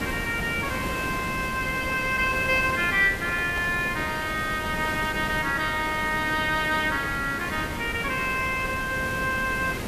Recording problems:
hiss; slope -5 dB per octave, SNR 8 dB
microphone handling noise; from 2 to 4 s; peak -10 dB vs average level

